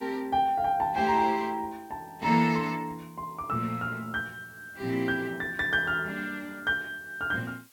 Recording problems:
hiss; slope +1 dB per octave, SNR 28 dB

